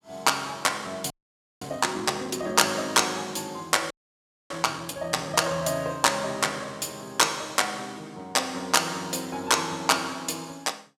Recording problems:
audio freezing; at 1 s for 0.5 s and at 4 s for 0.5 s

